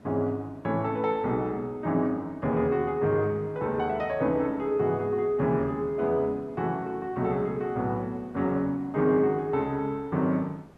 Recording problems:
background hiss; slope -9 dB per octave, SNR 25 dB

